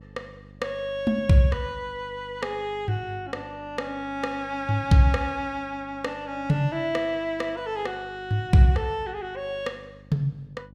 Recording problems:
hum; 50 Hz, harmonics up to 600 Hz, SNR 23 dB

